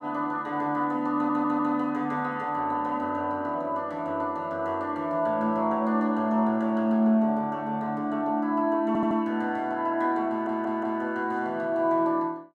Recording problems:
audio stuttering; at 1 s, at 9 s and at 10 s

